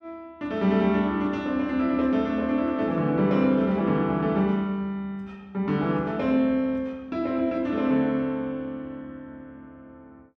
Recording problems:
none

